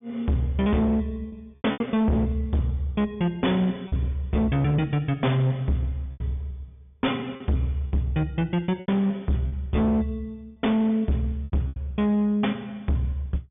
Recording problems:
treble missing; nothing above 3.6 kHz
distortion; hard clipping, signal-to-distortion ratio 7 dB
lost packets; 5% of the sound replaced, filled with repeated pitch periods

